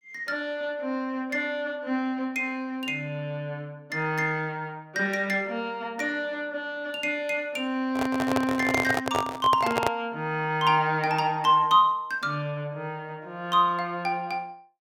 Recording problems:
microphone handling noise; from 8 to 10 s; peak +4 dB vs average level

